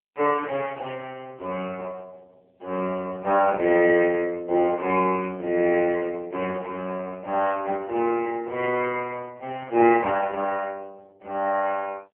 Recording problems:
phone line; 300 Hz to 2.7 kHz, AMR-NB

